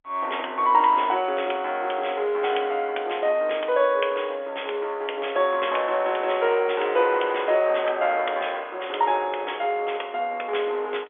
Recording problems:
telephone audio; 320 Hz to 3.5 kHz, G.711

